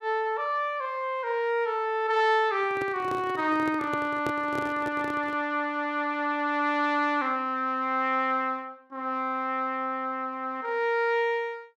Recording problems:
handling noise; from 2.5 to 5.5 s; peak -1 dB vs average level

